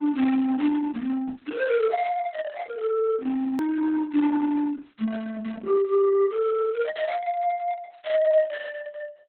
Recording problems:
lossy codec; Opus, log-spectral distance 3 dB, nothing above 20.1 kHz
click at an edit; at 3.5 s

